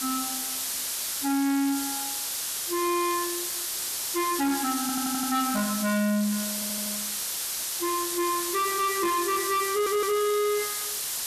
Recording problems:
distorted audio; soft clipping, signal-to-distortion ratio 7 dB
hiss; SNR 2 dB
stutter; at 5 s, at 6.5 s and at 9.5 s

